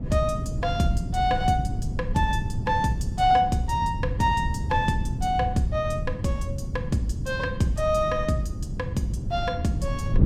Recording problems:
wind on the microphone; below 150 Hz, SNR 5 dB

